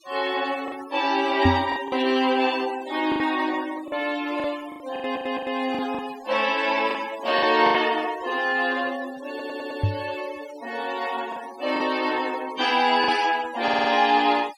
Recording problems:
denoising artefacts; signal-to-artefact ratio 17 dB
packet loss; 6% of the sound replaced, filled with the last packet
microphone bump; at 1.5 s and at 10 s; peak +7 dB vs average level
audio stuttering; at 5 s, at 9.5 s and at 14 s

